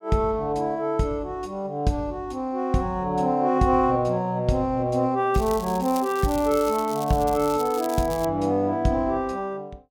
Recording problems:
crackling; from 5.5 to 8.5 s; loose cable, SNR 16 dB

